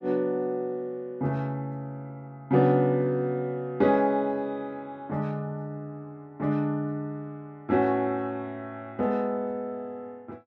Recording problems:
none

